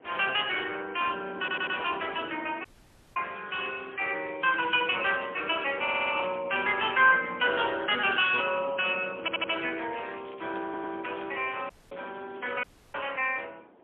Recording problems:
telephone audio; 280 Hz to 3.4 kHz, AMR-NB, then MP3
wind noise; below 780 Hz, SNR 23 dB
audio stuttering; 4 times, first at 1.5 s
dropout; at 2.5 s for 0.5 s, at 12 s and at 13 s
crackling; from 3 to 6.5 s and from 10 to 13 s; loose cable, SNR 27 dB

